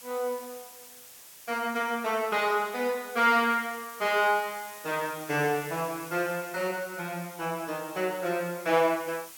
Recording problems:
hiss; slope +1 dB per octave, SNR 16 dB

